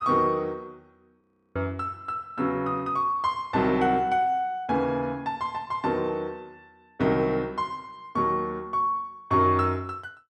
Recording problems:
frozen audio; at 1 s

